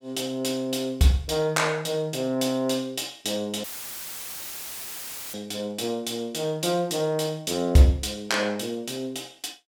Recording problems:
dropout; at 3.5 s for 1.5 s; filled with static

